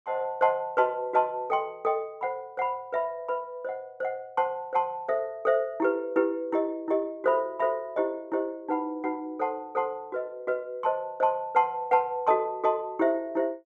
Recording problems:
none

